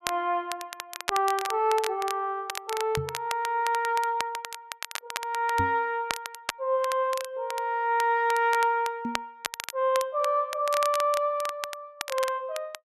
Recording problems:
crackling; vinyl, SNR 10 dB
knock on the microphone; at 3 s, at 5.5 s and at 9 s; peak -1 dB vs average level

